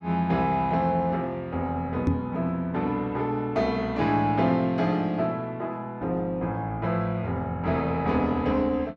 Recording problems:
microphone thump; at 2 s; peak +5 dB vs average level

